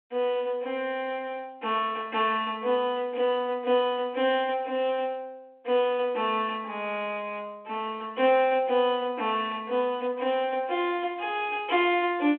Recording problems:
telephone audio; 220 Hz to 3.5 kHz, G.726

